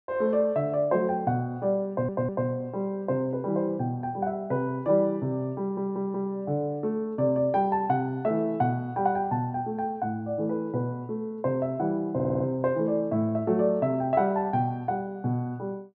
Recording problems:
audio stuttering; at 2 s, at 5.5 s and at 12 s

